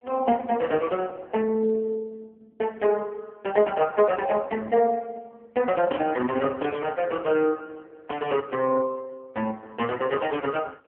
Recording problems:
phone line; 170 Hz to 2.8 kHz, AMR-NB

